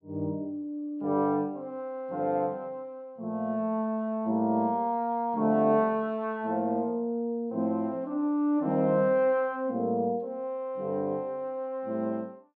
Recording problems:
none

